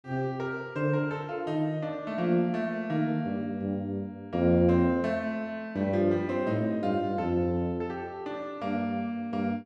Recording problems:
none

